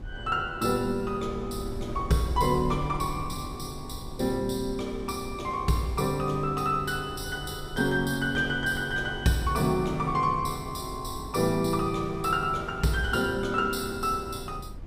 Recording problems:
wind noise; below 120 Hz, SNR 14 dB

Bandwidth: 15.5 kHz